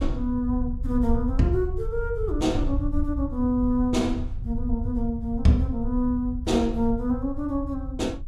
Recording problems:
rumble; below 80 Hz, SNR 6 dB

